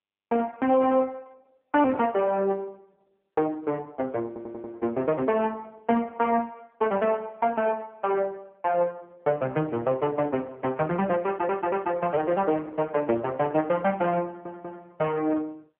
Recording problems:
phone line; 260 Hz to 3.3 kHz, AMR-NB
stutter; at 4.5 s, at 11 s and at 14 s

